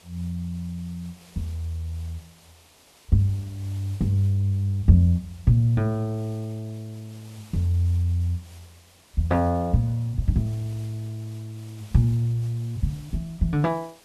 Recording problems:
background hiss; SNR 26 dB

